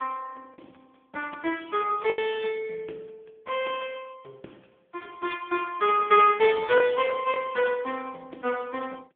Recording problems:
telephone audio; 280 Hz to 3.4 kHz, AMR-NB
lost packets; 1.8% of the sound replaced, filled with the last packet

